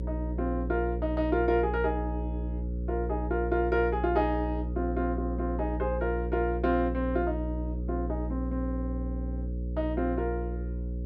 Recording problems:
hum; 60 Hz, harmonics up to 540 Hz, SNR 3 dB

